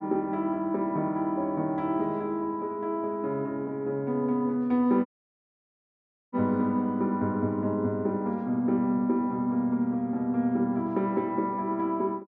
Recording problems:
dropout; at 5 s for 1.5 s

